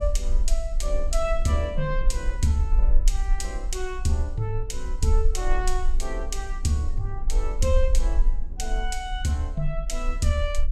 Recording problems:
rumble; below 38 Hz, strongest tone 20 Hz, SNR 0 dB
wind on the microphone; below 230 Hz, SNR 18 dB

